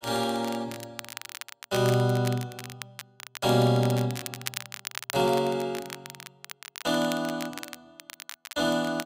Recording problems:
crackling; vinyl, SNR 13 dB

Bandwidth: 15.5 kHz